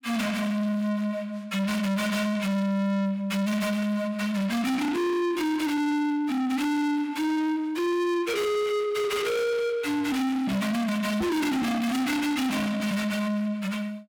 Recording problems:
distortion; soft clipping, signal-to-distortion ratio 7 dB

